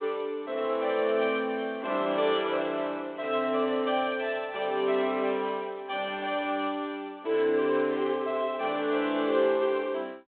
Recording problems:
phone line; 220 Hz to 3.6 kHz, G.726

